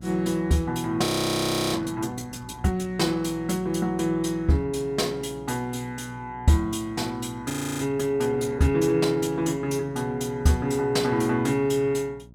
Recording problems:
mains hum; 60 Hz, harmonics up to 600 Hz, SNR 22 dB
frozen audio; at 1 s for 0.5 s and at 7.5 s

